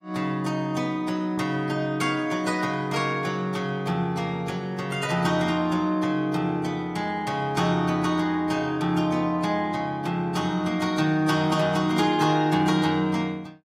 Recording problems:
lossy codec; AAC, log-spectral distance 2 dB, nothing above 15.1 kHz

